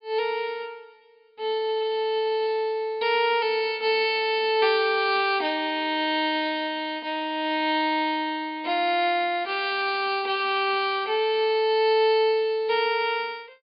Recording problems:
treble missing; nothing above 5.1 kHz

